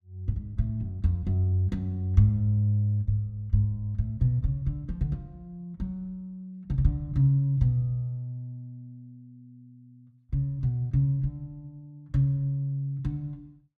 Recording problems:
none

